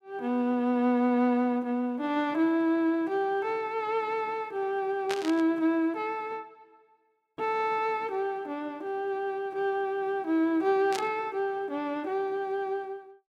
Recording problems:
static burst; at 5 s and at 11 s; peak -2 dB vs average level

